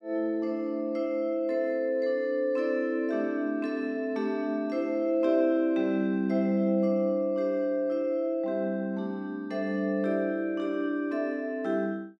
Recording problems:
none

